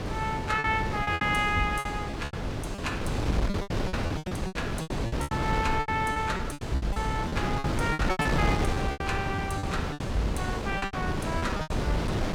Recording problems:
wind noise; below 570 Hz, SNR 0 dB
packet loss; 16% of the sound replaced, filled with repeated pitch periods

